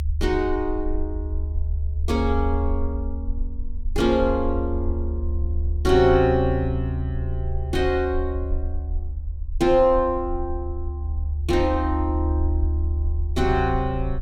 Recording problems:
low-frequency rumble; below 74 Hz, strongest tone 74 Hz, SNR 4 dB

